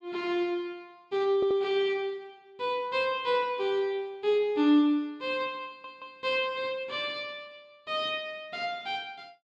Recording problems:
stutter; at 1.5 s and at 5.5 s

